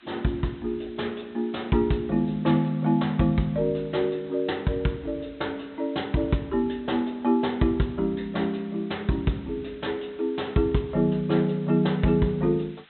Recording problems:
low-pass filter; nothing above 4 kHz
background hiss; SNR 28 dB

